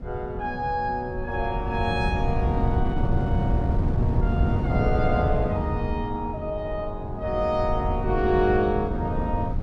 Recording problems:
wind noise; below 160 Hz, SNR 0 dB

